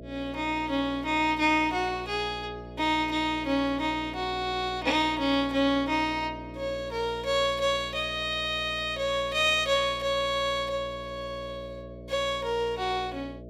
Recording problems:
hum; 60 Hz, harmonics up to 660 Hz, SNR 16 dB

